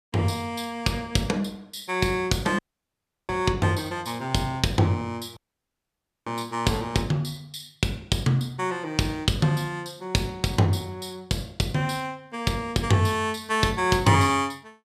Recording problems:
dropout; at 2.5 s for 0.5 s and at 5.5 s for 1 s

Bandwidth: 14.5 kHz